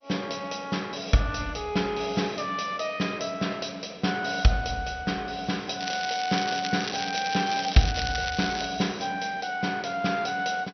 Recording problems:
lossy compression; MP2, log-spectral distance 10 dB, nothing above 6 kHz
crackling; from 6 to 8.5 s; loose cable, SNR 6 dB

